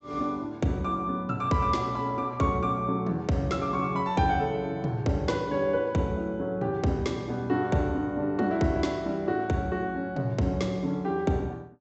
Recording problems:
low-pass filter; nothing above 7.9 kHz

